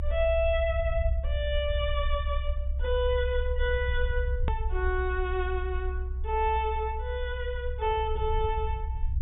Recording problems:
treble cut off; nothing above 4 kHz
low-frequency rumble; below 66 Hz, SNR 2 dB
hard cut with a click; at 4.5 s

